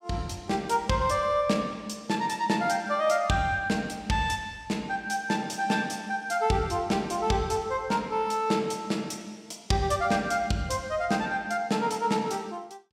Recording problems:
none

